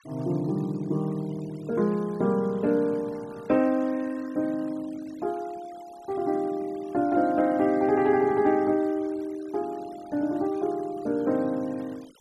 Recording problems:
noise reduction artefacts; signal-to-artefact ratio 25 dB

